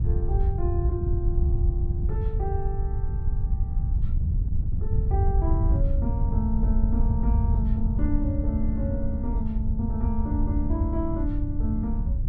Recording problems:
wind on the microphone; below 88 Hz, SNR -6 dB

